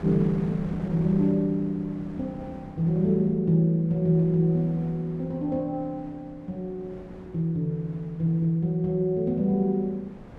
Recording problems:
wind on the microphone; below 480 Hz, SNR 18 dB

